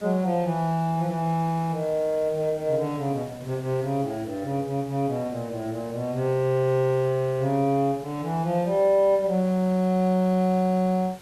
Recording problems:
background hiss; slope -3 dB per octave, SNR 22 dB

